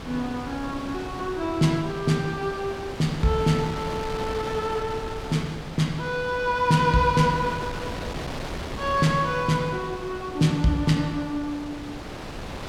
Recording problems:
wind on the microphone; below 1.4 kHz, SNR 10 dB

